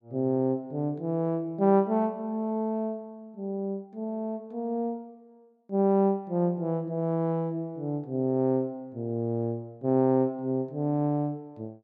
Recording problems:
none

